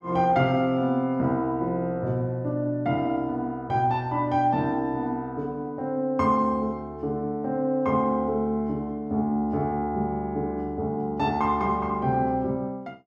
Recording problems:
none

